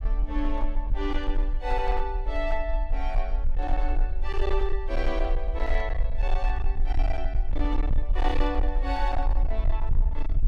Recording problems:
distorted audio; hard clipping, signal-to-distortion ratio 11 dB
low-frequency rumble; below 40 Hz, SNR -3 dB

